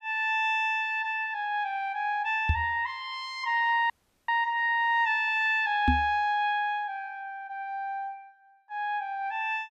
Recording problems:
microphone bump; at 2.5 s and at 6 s; peak +5 dB vs average level
dropout; at 4 s

